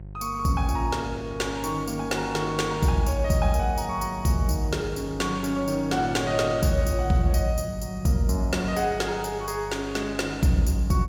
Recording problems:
hum; 50 Hz, harmonics up to 550 Hz, SNR 15 dB

